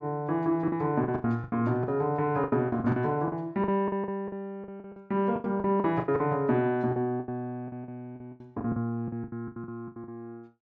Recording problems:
lost packets; 18% of the sound replaced, filled with the last packet

